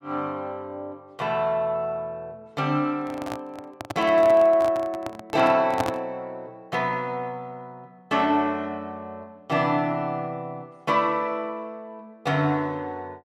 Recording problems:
handling noise; from 3 to 6 s; peak +1 dB vs average level

